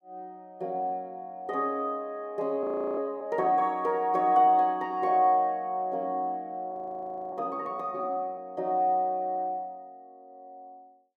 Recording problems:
audio freezing; at 2.5 s and at 6.5 s for 0.5 s

